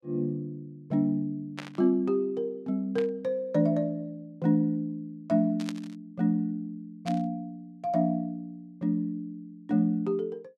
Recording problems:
burst of static; 4 times, first at 1.5 s; peak -5 dB vs average level

